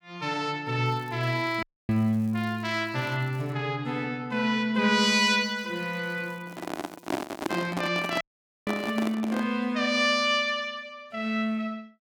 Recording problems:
crackling; from 1 to 3.5 s, from 5 to 7.5 s and from 8 to 9 s; loose cable, SNR 30 dB
audio cutting out; at 1.5 s and at 8 s
microphone handling noise; from 6.5 to 9.5 s; peak +2 dB vs average level

